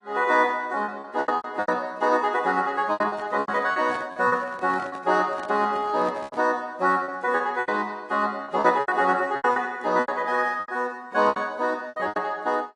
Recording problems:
lossy compression; AAC, log-spectral distance 2 dB, nothing above 10.4 kHz
lost packets; 13% of the sound replaced, filled with repeated pitch periods
microphone handling noise; from 3 to 6.5 s; peak -9 dB vs average level

